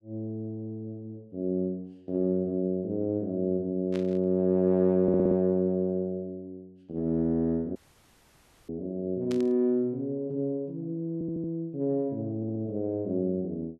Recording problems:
static burst; at 4 s and at 9.5 s; peak -9 dB vs average level
audio stuttering; at 5 s, at 11 s and at 12 s
dropout; at 8 s for 1 s

